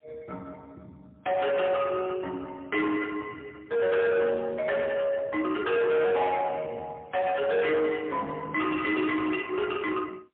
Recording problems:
telephone audio; 170 Hz to 2.7 kHz, AMR-NB, then MP3
distorted audio; soft clipping, signal-to-distortion ratio 8 dB

